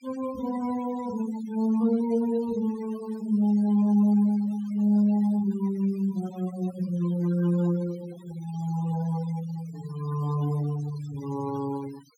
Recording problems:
denoising artefacts; signal-to-artefact ratio 20 dB

